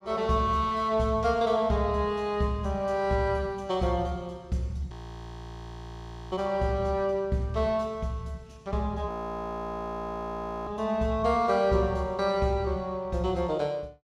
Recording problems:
frozen audio; at 5 s for 1.5 s and at 9 s for 1.5 s

